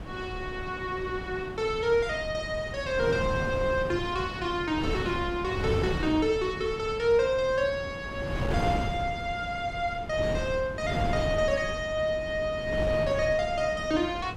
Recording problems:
wind on the microphone; below 410 Hz, SNR 7 dB

